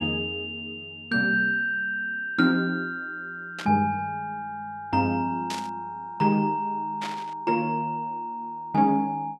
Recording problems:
static burst; at 3.5 s, at 5.5 s and at 7 s; peak -4 dB vs average level

